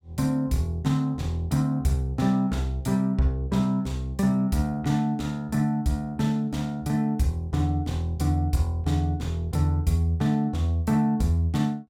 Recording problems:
none

